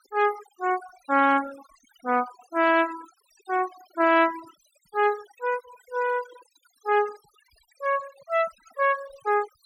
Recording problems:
denoising artefacts; signal-to-artefact ratio 17 dB

